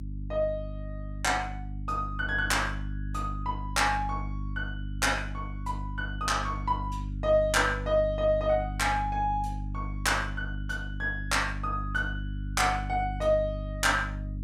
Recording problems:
hum; 50 Hz, harmonics up to 300 Hz, SNR 7 dB

